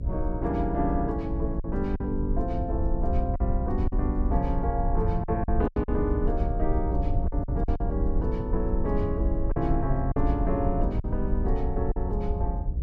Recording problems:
hum; 60 Hz, harmonics up to 600 Hz, SNR 8 dB
low-frequency rumble; below 70 Hz, SNR 1 dB
packet loss; 5% of the sound replaced, filled with silence

